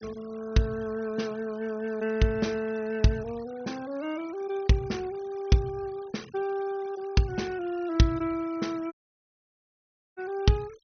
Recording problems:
treble missing; nothing above 6.3 kHz
noise reduction artefacts; signal-to-artefact ratio 22 dB
audio cutting out; at 9 s for 1 s

